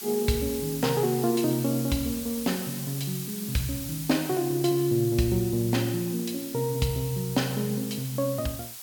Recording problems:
background hiss; slope +2 dB per octave, SNR 9 dB

